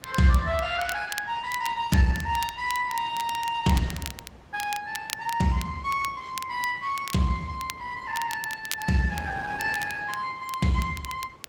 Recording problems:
codec artefacts; Opus, log-spectral distance 3 dB, nothing above 16.6 kHz
wind on the microphone; below 910 Hz, SNR 22 dB
crackling; vinyl, SNR 12 dB

